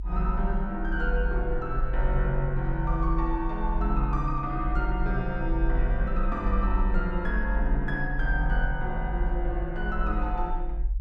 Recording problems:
rumble; below 48 Hz, strongest tone 28 Hz, SNR 0 dB

